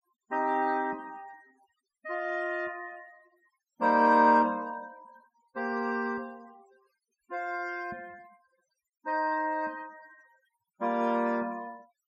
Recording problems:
noise reduction artefacts; signal-to-artefact ratio 27 dB

